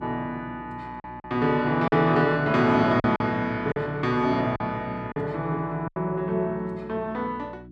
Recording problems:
hum; 60 Hz, harmonics up to 360 Hz, SNR 20 dB
packet loss; 5% of the sound replaced, filled with silence

